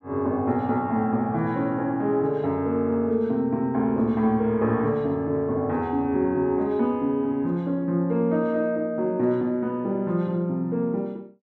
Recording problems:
none

